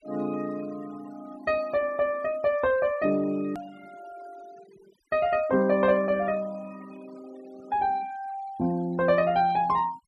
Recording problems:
noise reduction artefacts; signal-to-artefact ratio 23 dB
edit click; at 3.5 s

